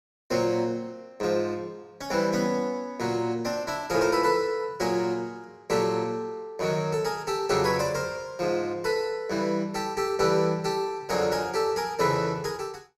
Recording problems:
none

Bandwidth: 16 kHz